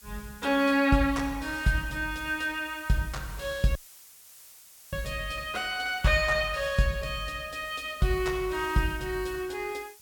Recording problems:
hiss; slope +2 dB per octave, SNR 21 dB
dropout; at 4 s for 1 s

